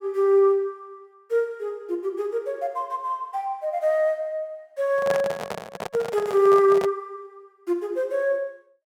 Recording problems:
microphone handling noise; from 5 to 7 s; peak -1 dB vs average level

